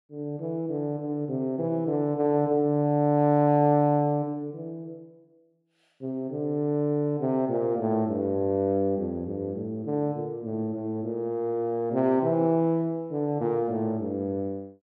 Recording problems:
none

